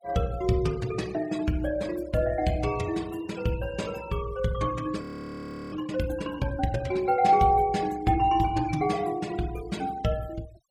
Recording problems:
noise reduction artefacts; signal-to-artefact ratio 19 dB
frozen audio; at 5 s for 0.5 s

